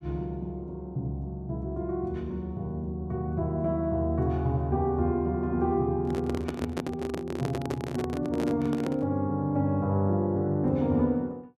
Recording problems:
handling noise; from 6 to 9 s; peak +1 dB vs average level

